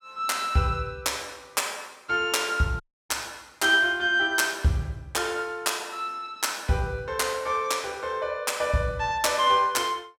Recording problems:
audio cutting out; at 3 s

